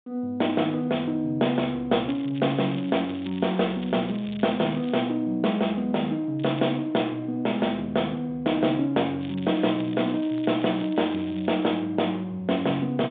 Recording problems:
telephone audio; 170 Hz to 3.7 kHz, G.726
crackling; from 2 to 5 s, at 6.5 s and from 9 to 12 s; loose cable, SNR 20 dB

